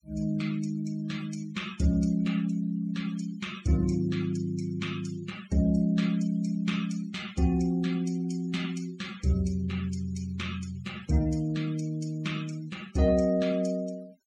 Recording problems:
noise reduction artefacts; signal-to-artefact ratio 20 dB

